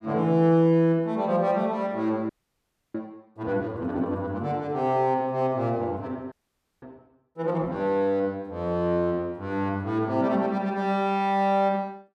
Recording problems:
audio freezing; at 2.5 s for 0.5 s and at 6.5 s for 0.5 s

